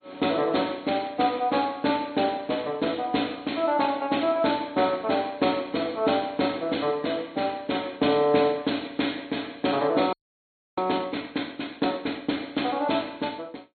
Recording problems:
low-pass filter; nothing above 4.2 kHz
lossy compression; MP3, log-spectral distance 3 dB
frozen audio; at 10 s for 0.5 s

